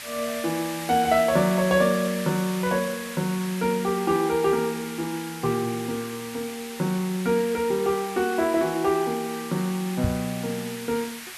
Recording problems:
background hiss; SNR 11 dB
microphone thump; at 10 s; peak +3 dB vs average level

